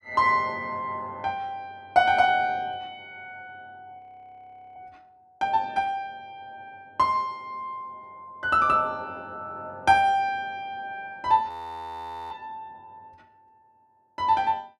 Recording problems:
audio freezing; at 4 s for 1 s and at 11 s for 1 s

